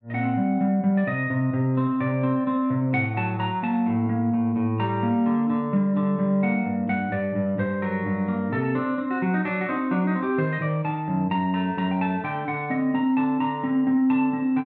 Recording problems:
none

